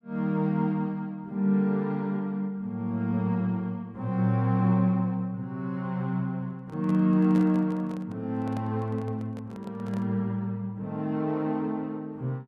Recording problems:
microphone handling noise; from 6.5 to 10 s; peak -8 dB vs average level

